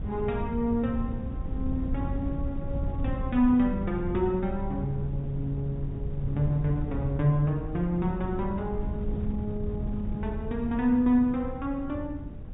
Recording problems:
treble cut off; nothing above 4 kHz
wind on the microphone; below 130 Hz, SNR 6 dB

